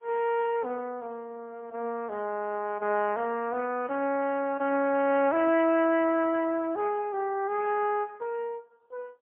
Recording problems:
telephone audio; 240 Hz to 3.3 kHz, AMR-NB, then MP3

